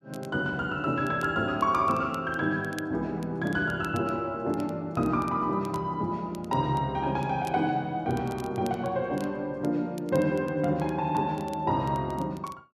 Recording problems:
crackle; vinyl, SNR 24 dB

